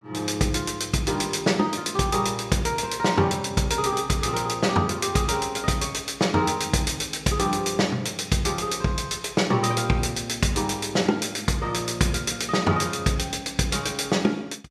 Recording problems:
none

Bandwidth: 14.5 kHz